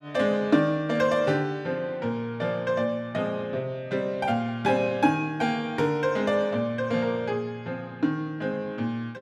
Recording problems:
none

